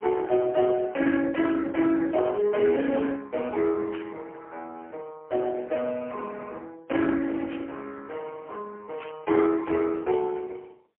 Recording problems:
telephone audio; 280 Hz to 3.1 kHz, AMR-NB, then MP3
static burst; 4 times, first at 1.5 s; peak -10 dB vs average level

